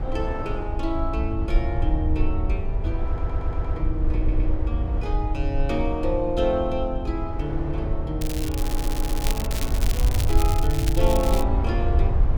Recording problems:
rumble; below 70 Hz, SNR -2 dB
wind on the microphone; below 530 Hz, SNR 8 dB
stutter; at 3 s, at 4 s and at 8.5 s
crackling; from 8 to 11 s; loose cable, SNR 5 dB

